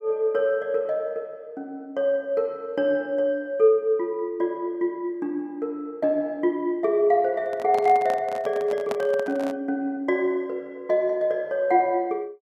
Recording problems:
handling noise; from 7.5 to 9.5 s; peak -3 dB vs average level

